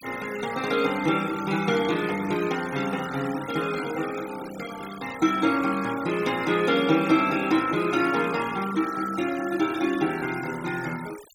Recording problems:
denoising artefacts; signal-to-artefact ratio 15 dB

